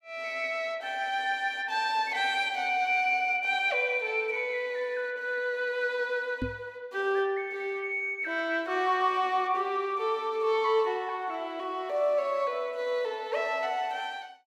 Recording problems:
knock on the microphone; at 6.5 s; peak 0 dB vs average level

